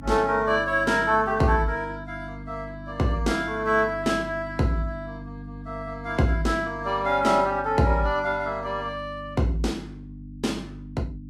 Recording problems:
lossy codec; Vorbis, log-spectral distance 2 dB, nothing above 12.3 kHz
electrical hum; 50 Hz, harmonics up to 300 Hz, SNR 15 dB

